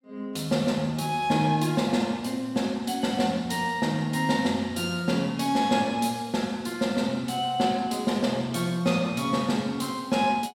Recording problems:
none

